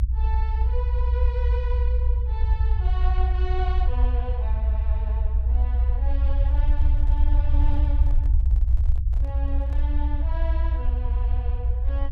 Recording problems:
rumble; below 62 Hz, SNR -14 dB
handling noise; from 6.5 to 10 s; peak -7 dB vs average level

